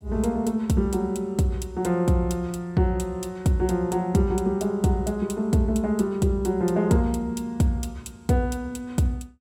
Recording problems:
none

